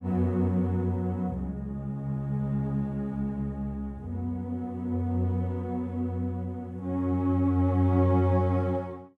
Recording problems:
none

